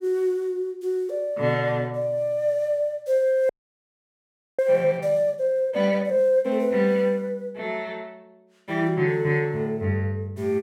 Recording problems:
frozen audio; at 3.5 s for 1 s

